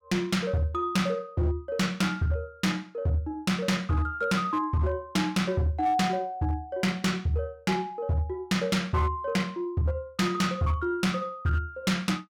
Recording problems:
distorted audio; hard clipping, signal-to-distortion ratio 11 dB

